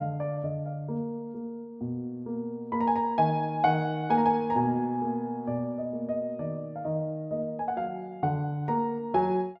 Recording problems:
none

